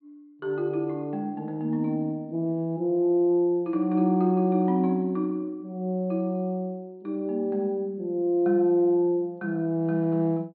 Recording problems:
low-pass filter; nothing above 4.5 kHz

